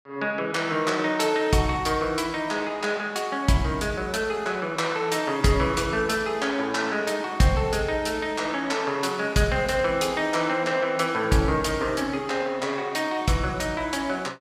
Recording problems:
none

